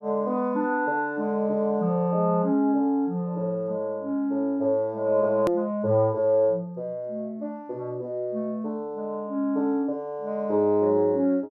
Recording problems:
click at an edit; at 5.5 s

